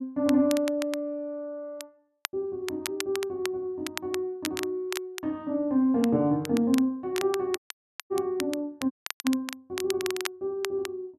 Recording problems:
crackling; vinyl, SNR 10 dB
dropout; at 7.5 s for 0.5 s and at 9 s

